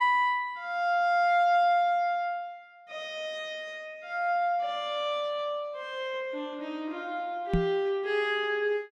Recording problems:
knock on the microphone; at 7.5 s; peak +5 dB vs average level

